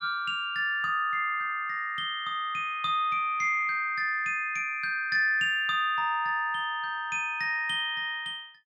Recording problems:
none

